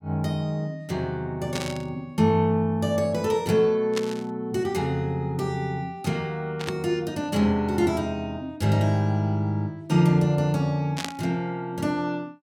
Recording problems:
static burst; 4 times, first at 1.5 s; peak -1 dB vs average level

